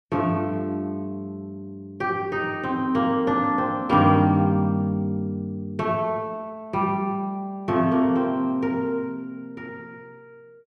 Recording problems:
none

